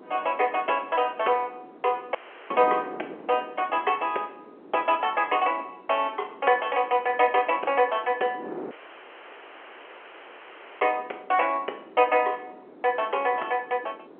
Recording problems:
telephone audio; 300 Hz to 3.2 kHz, G.711
wind on the microphone; below 600 Hz, SNR 19 dB
audio cutting out; at 2 s and at 8.5 s for 2 s

